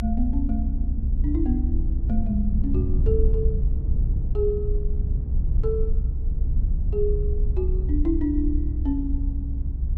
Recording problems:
low-frequency rumble; below 64 Hz, SNR -4 dB

